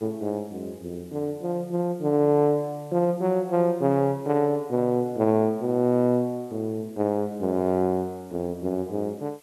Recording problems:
background hiss; slope -1 dB per octave, SNR 30 dB

